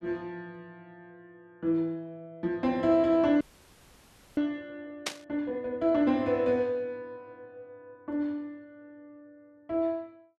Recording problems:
frozen audio; at 3.5 s for 1 s
burst of static; at 5 s; peak +2 dB vs average level

